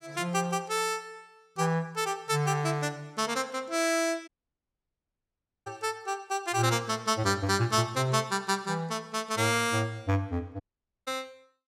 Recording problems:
dropout; at 4.5 s for 1.5 s and at 11 s

